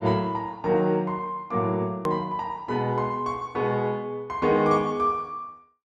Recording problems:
hard cut with a click; at 2 s

